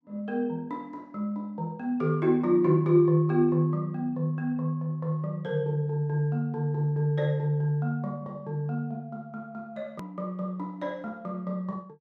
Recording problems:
edit click; at 10 s

